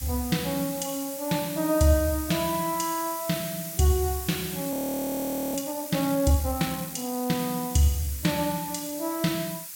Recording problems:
background hiss; slope +4 dB per octave, SNR 8 dB
audio freezing; at 4.5 s for 1 s

